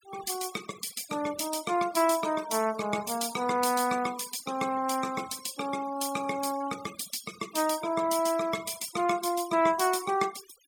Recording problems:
noise reduction artefacts; signal-to-artefact ratio 16 dB

